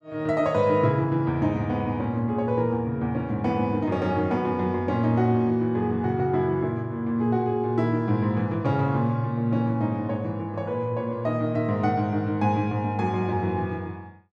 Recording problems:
none

